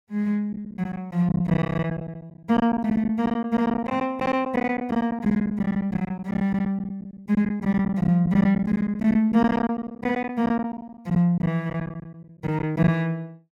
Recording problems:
lost packets; 15% of the sound replaced, filled with silence

